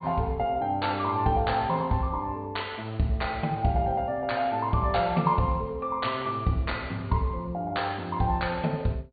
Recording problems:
treble missing; nothing above 4.6 kHz

